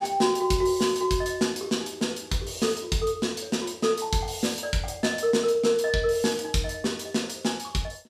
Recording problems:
none

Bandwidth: 14.5 kHz